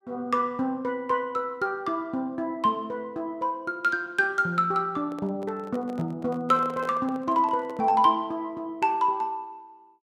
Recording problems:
handling noise; from 5 to 8 s; peak -8 dB vs average level

